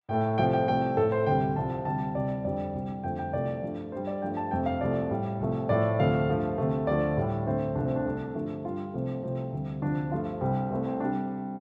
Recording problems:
none

